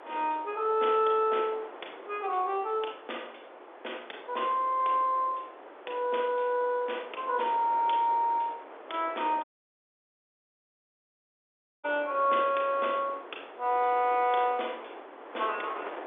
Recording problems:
phone line; 280 Hz to 3.6 kHz, G.711
wind noise; below 1.2 kHz, SNR 16 dB
audio cutting out; at 9.5 s for 2.5 s

